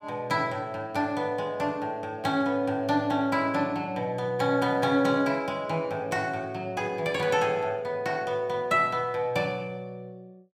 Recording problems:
none

